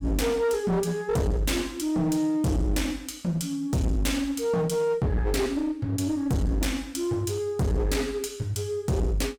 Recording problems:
distortion; hard clipping, uneven, signal-to-distortion ratio 6 dB

